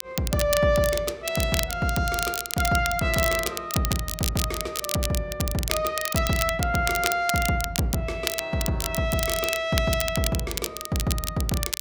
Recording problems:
crackle; vinyl, SNR 5 dB

